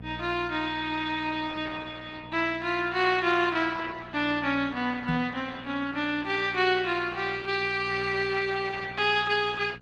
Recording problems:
lossy codec; Opus, log-spectral distance 4 dB, nothing above 10.1 kHz
hum; 60 Hz, harmonics up to 780 Hz, SNR 18 dB
knock on the microphone; at 5 s; peak +1 dB vs average level

